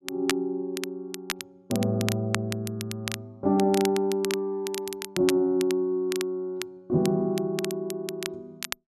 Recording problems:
crackle; vinyl, SNR 9 dB

